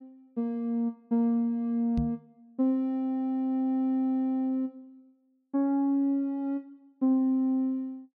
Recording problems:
microphone thump; at 2 s; peak 0 dB vs average level

